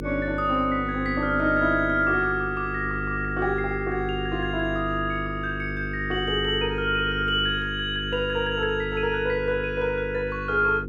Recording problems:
hum; 50 Hz, harmonics up to 500 Hz, SNR 8 dB

